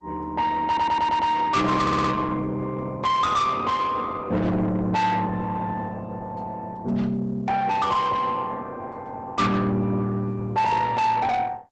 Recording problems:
lossy compression; Opus, log-spectral distance 2 dB, nothing above 8 kHz
distortion; soft clipping, signal-to-distortion ratio 7 dB
audio stuttering; at 0.5 s and at 2 s

